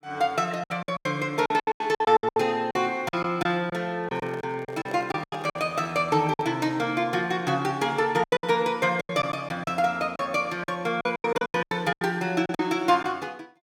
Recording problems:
lost packets; 14% of the sound replaced, filled with silence
handling noise; from 4 to 6.5 s; peak -7 dB vs average level

